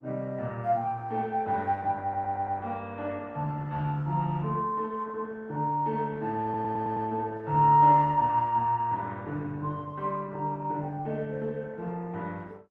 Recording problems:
codec artefacts; Opus, then Opus, log-spectral distance 2 dB
audio stuttering; at 2 s and at 6.5 s

